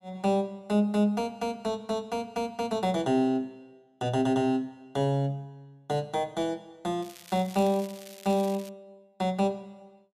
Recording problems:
crackling; from 7 to 8.5 s; loose cable, SNR 18 dB

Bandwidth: 14.5 kHz